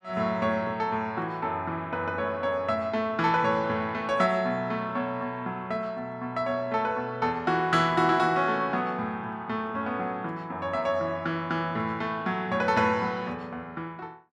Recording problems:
none

